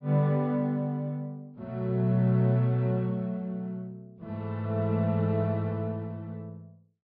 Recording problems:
low-pass filter; nothing above 5.1 kHz

